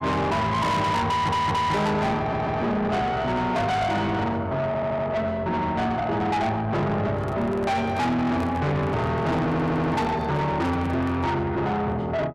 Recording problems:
distortion; soft clipping, signal-to-distortion ratio 7 dB
stutter; 4 times, first at 1 s
microphone handling noise; from 7 to 11 s; peak -7 dB vs average level

